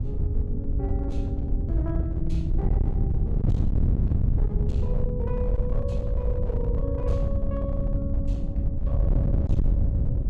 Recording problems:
distortion; hard clipping, signal-to-distortion ratio 11 dB
rumble; below 110 Hz, SNR 10 dB
wind on the microphone; below 100 Hz, SNR -7 dB

